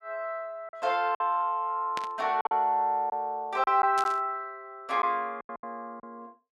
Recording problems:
lost packets; 7% of the sound replaced, filled with silence
static burst; at 2 s and at 4 s; peak -4 dB vs average level

